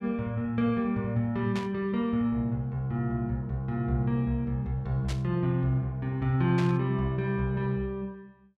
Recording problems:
burst of static; at 1.5 s, at 5 s and at 6.5 s; peak -6 dB vs average level

